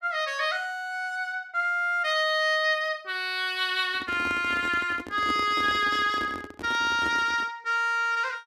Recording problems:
microphone handling noise; from 4 to 7.5 s; peak -4 dB vs average level

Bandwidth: 13.5 kHz